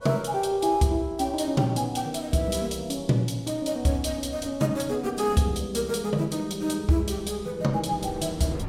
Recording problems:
wind noise; below 330 Hz, SNR 20 dB

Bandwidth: 16 kHz